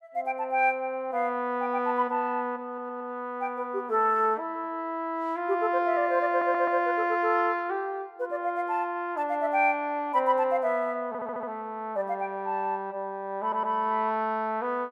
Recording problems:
stutter; 4 times, first at 2.5 s

